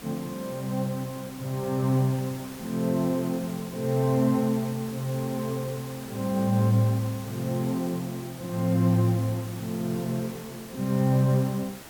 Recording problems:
hiss; slope -3 dB per octave, SNR 15 dB

